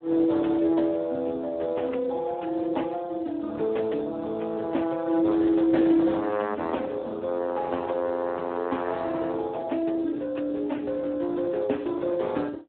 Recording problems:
telephone audio; 190 Hz to 3.6 kHz, Speex

